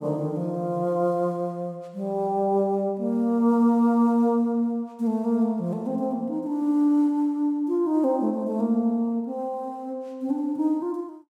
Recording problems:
none

